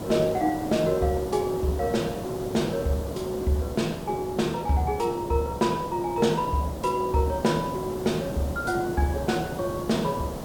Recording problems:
hiss; SNR 8 dB

